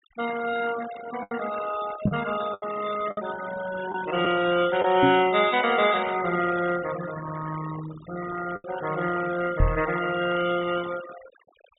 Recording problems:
treble missing; nothing above 4 kHz
noise reduction artefacts; signal-to-artefact ratio 13 dB
packet loss; 3% of the sound replaced, filled with the last packet
microphone bump; at 2 s, at 5 s and at 9.5 s; peak +7 dB vs average level

